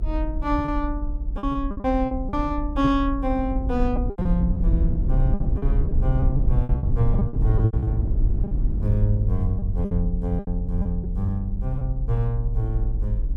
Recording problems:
low-frequency rumble; below 64 Hz, SNR 0 dB
packet loss; 10% of the sound replaced, filled with repeated pitch periods

